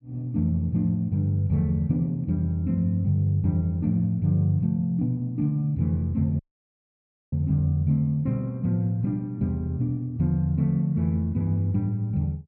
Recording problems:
dropout; at 6.5 s for 1 s

